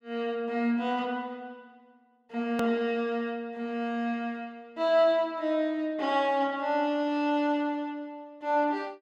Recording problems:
click at an edit; at 2.5 s

